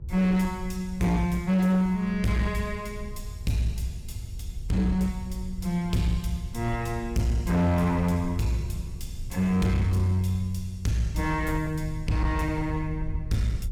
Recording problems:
distorted audio; hard clipping, signal-to-distortion ratio 12 dB
electrical hum; 60 Hz, harmonics up to 960 Hz, SNR 29 dB
low-frequency rumble; below 86 Hz, SNR 11 dB

